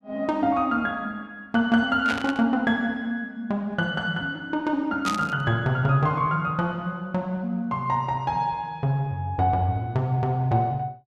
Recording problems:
static burst; at 2 s and at 5 s; peak -2 dB vs average level

